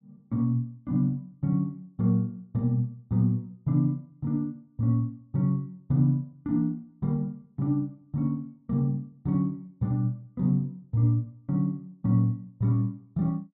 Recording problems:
none

